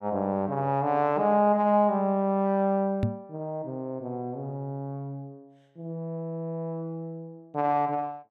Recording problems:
knock on the microphone; at 3 s; peak +4 dB vs average level

